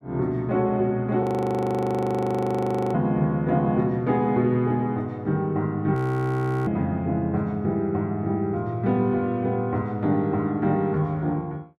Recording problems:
frozen audio; at 1 s for 1.5 s and at 6 s for 0.5 s

